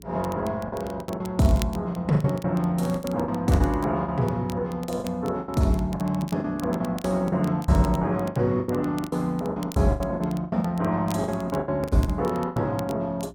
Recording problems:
mains hum; 60 Hz, harmonics up to 420 Hz, SNR 24 dB
crackle; vinyl, SNR 21 dB
lost packets; 16% of the sound replaced, filled with the last packet

